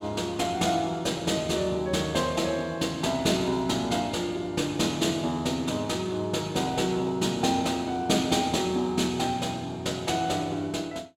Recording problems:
none

